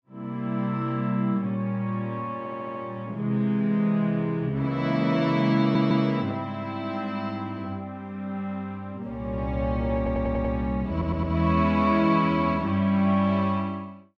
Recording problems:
stutter; 4 times, first at 2.5 s

